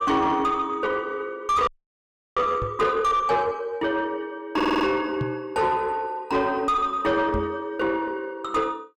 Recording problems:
distorted audio; soft clipping, signal-to-distortion ratio 9 dB
frozen audio; at 1.5 s for 0.5 s
microphone bump; at 2.5 s, at 5 s and at 7.5 s; peak 0 dB vs average level
stutter; at 4.5 s

